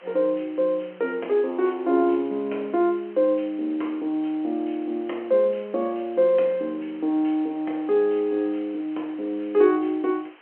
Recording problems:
phone line; 240 Hz to 3.6 kHz, G.711
background hiss; SNR 27 dB

